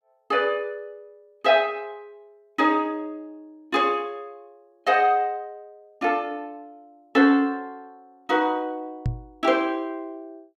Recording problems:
knock on the microphone; at 9 s; peak +1 dB vs average level

